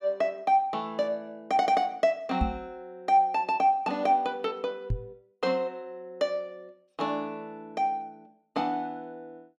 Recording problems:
knock on the microphone; at 2.5 s and at 5 s; peak +4 dB vs average level

